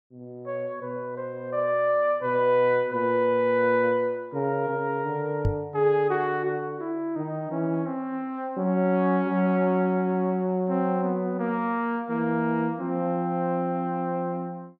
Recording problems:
microphone thump; at 5.5 s; peak +3 dB vs average level

